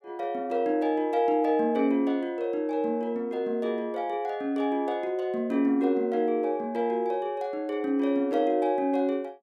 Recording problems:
none

